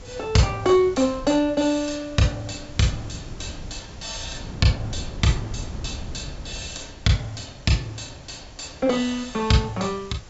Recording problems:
low-pass filter; nothing above 8 kHz
hiss; slope -2 dB per octave, SNR 25 dB
wind noise; below 170 Hz, SNR 16 dB

